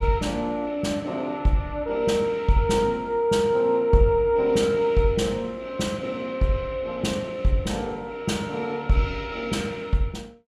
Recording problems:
none

